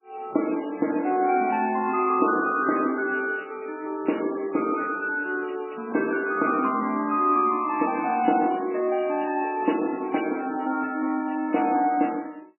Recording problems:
lossy codec; MP3, log-spectral distance 5 dB, nothing above 2.4 kHz

